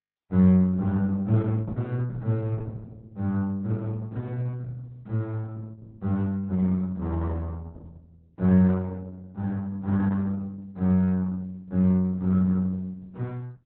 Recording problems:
codec artefacts; Opus, log-spectral distance 2 dB, nothing above 3.9 kHz

